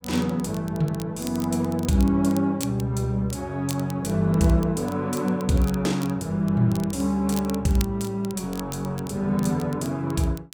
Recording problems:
crackling; vinyl, SNR 18 dB

